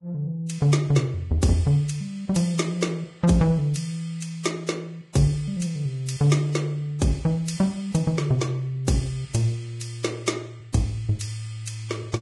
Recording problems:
codec artefacts; Vorbis, log-spectral distance 3 dB, nothing above 10.7 kHz

